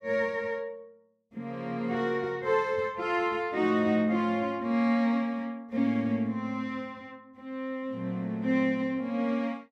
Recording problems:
none

